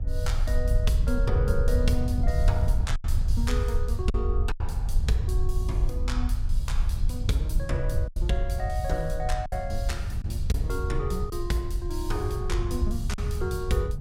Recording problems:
low-frequency rumble; below 64 Hz, SNR -1 dB
wind noise; below 98 Hz, SNR 0 dB
packet loss; 3% of the sound replaced, filled with silence

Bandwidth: 16 kHz